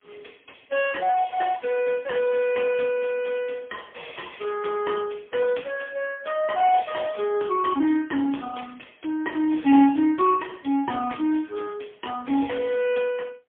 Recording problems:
phone line; 190 Hz to 3.3 kHz, AMR-NB, then MP3

